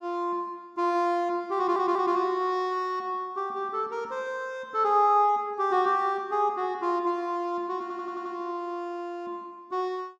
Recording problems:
stutter; at 1.5 s and at 8 s

